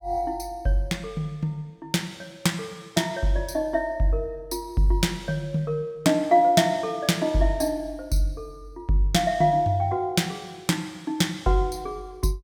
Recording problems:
none

